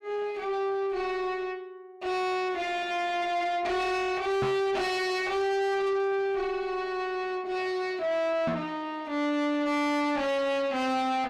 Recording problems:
distorted audio; soft clipping, signal-to-distortion ratio 5 dB
microphone bump; at 4.5 s and at 8.5 s; peak +5 dB vs average level

